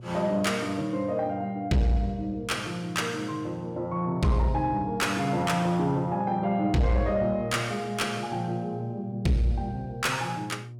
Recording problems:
distortion; soft clipping, signal-to-distortion ratio 10 dB
hum; 60 Hz, harmonics up to 600 Hz, SNR 15 dB

